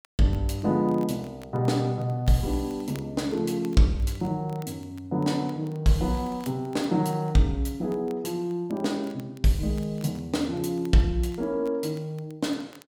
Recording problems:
crackling; vinyl, SNR 28 dB

